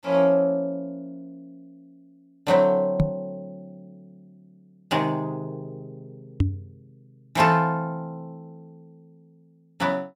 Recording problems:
microphone thump; at 3 s and at 6.5 s; peak +6 dB vs average level

